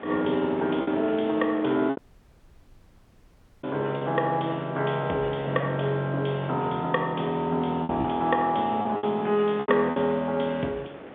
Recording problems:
telephone audio; 240 Hz to 3.8 kHz, G.711
wind noise; below 970 Hz, SNR 16 dB
lost packets; 5% of the sound replaced, filled with repeated pitch periods
audio cutting out; at 2 s for 1.5 s

